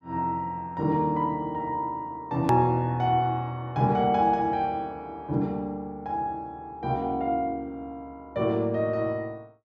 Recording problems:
hard cut with a click; at 2.5 s

